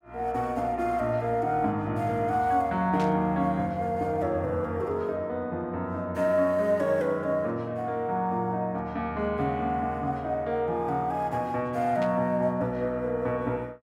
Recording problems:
burst of static; at 3 s and at 12 s; peak -10 dB vs average level

